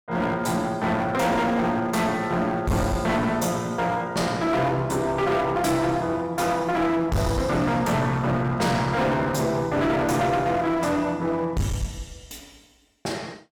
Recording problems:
distortion; hard clipping, uneven, signal-to-distortion ratio 7 dB

